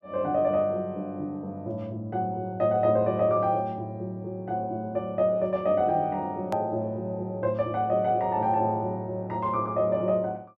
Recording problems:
click at an edit; at 6.5 s

